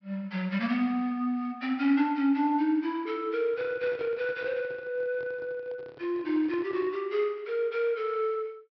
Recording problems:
treble missing; nothing above 5.5 kHz
microphone handling noise; from 3.5 to 7 s; peak -11 dB vs average level

